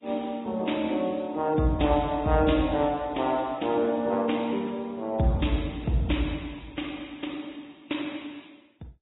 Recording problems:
lossy compression; AAC, then Vorbis, log-spectral distance 7 dB, nothing above 3.8 kHz

